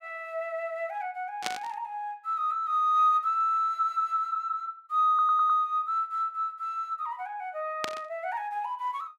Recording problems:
static burst; at 1.5 s and at 8 s; peak +1 dB vs average level
audio stuttering; at 5 s

